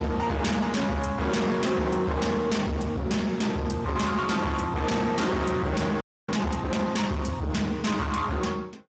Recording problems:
lossy codec; Speex, log-spectral distance 4 dB, nothing above 7.6 kHz
distorted audio; hard clipping, signal-to-distortion ratio 7 dB
audio freezing; at 6 s

